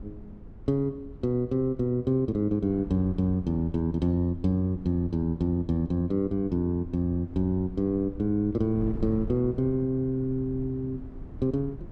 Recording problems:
wind noise; below 150 Hz, SNR 15 dB

